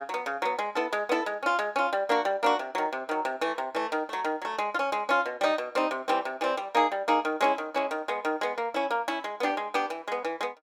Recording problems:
none

